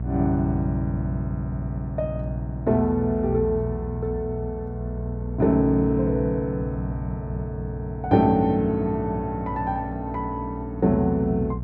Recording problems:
electrical hum; 60 Hz, harmonics up to 420 Hz, SNR 7 dB

